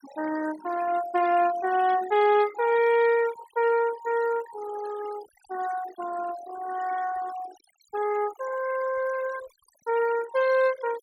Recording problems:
noise reduction artefacts; signal-to-artefact ratio 15 dB

